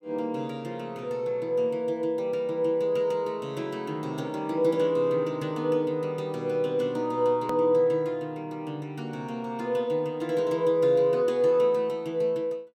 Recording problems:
click at an edit; at 7.5 s

